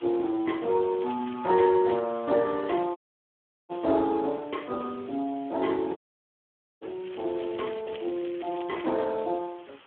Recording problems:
phone line; 280 Hz to 3.2 kHz, Speex
background hiss; SNR 23 dB
crackling; from 1 to 2 s and from 7 to 9 s; loose cable, SNR 20 dB
audio cutting out; at 3 s for 0.5 s and at 6 s for 1 s

